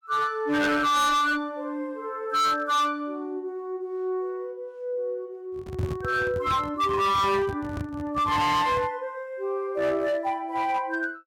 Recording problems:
distortion; hard clipping, signal-to-distortion ratio 7 dB
microphone handling noise; from 5.5 to 9 s; peak +1 dB vs average level

